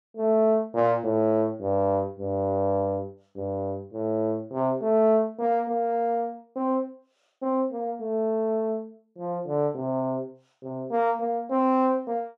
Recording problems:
none

